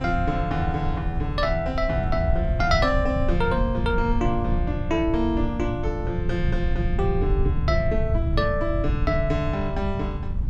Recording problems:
rumble; below 110 Hz, SNR 2 dB
wind on the microphone; below 470 Hz, SNR 21 dB

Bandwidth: 12.5 kHz